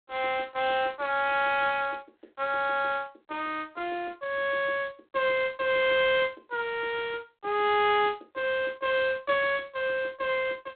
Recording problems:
phone line; 300 Hz to 3.7 kHz, G.726

